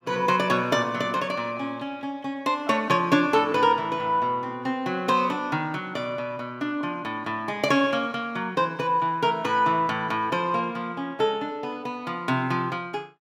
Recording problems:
none

